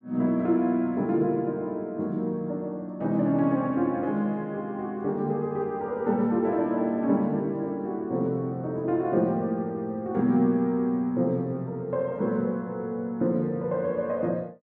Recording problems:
none

